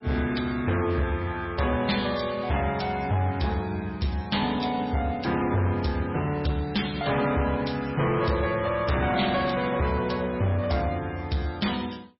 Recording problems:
codec artefacts; MP3, log-spectral distance 4 dB, nothing above 5.5 kHz
distorted audio; hard clipping, uneven, signal-to-distortion ratio 10 dB

